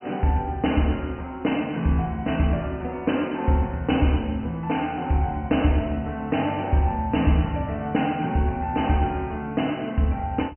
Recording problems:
low-pass filter; nothing above 3 kHz

